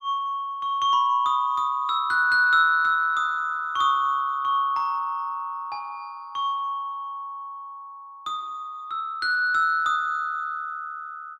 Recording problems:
none

